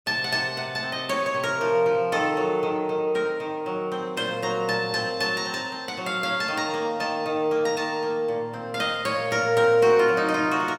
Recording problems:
none

